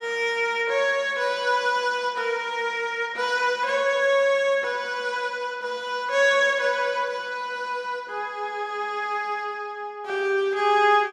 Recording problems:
none

